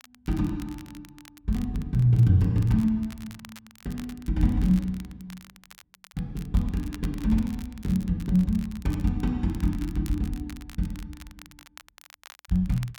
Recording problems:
crackling; vinyl, SNR 23 dB

